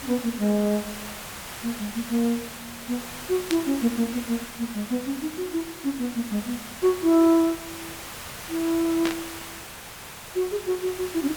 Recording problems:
hiss; SNR 11 dB
burst of static; at 3.5 s and at 9 s; peak +1 dB vs average level

